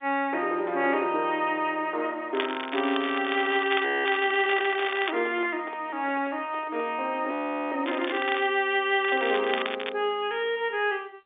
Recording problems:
telephone audio; 280 Hz to 3.9 kHz, G.711
crackling; from 2.5 to 5 s, at 8 s and at 9 s; loose cable, SNR 8 dB
frozen audio; at 4 s and at 7.5 s
microphone handling noise; from 4 to 7 s; peak -9 dB vs average level

